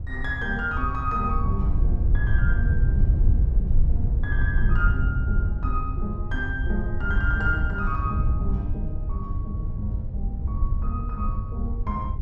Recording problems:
wind on the microphone; below 84 Hz, SNR -5 dB

